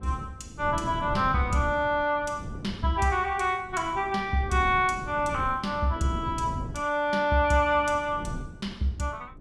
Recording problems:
wind on the microphone; below 220 Hz, SNR 12 dB

